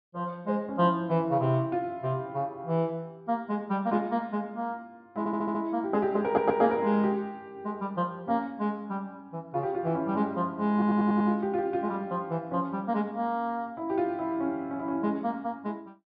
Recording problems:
treble missing; nothing above 5.5 kHz
stutter; at 5 s, at 6.5 s and at 11 s

